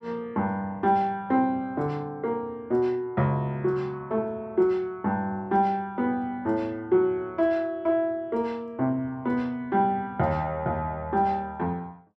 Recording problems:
none

